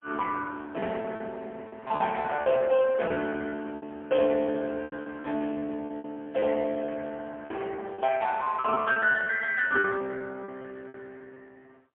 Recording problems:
phone line; 240 Hz to 3.2 kHz, AMR-NB, then MP3
lost packets; 15% of the sound replaced, filled with repeated pitch periods

